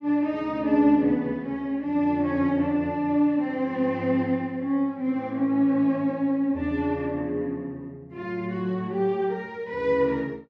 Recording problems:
none

